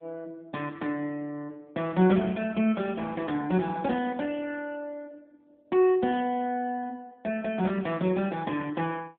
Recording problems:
telephone audio; 150 Hz to 3.5 kHz, AMR-NB

